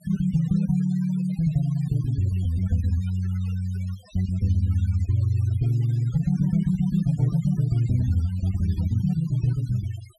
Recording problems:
noise reduction artefacts; signal-to-artefact ratio 23 dB

